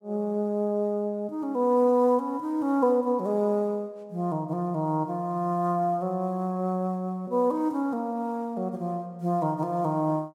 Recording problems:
none

